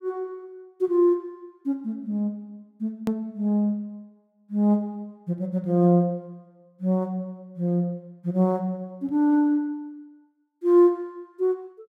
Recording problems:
hard cut with a click; at 3 s

